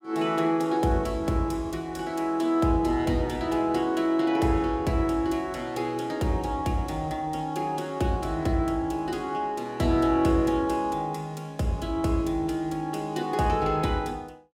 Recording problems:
none

